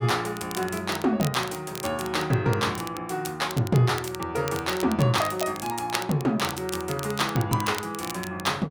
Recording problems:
crackle; vinyl, SNR 12 dB

